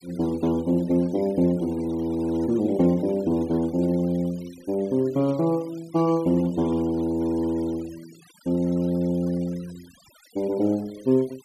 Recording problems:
denoising artefacts; signal-to-artefact ratio 24 dB

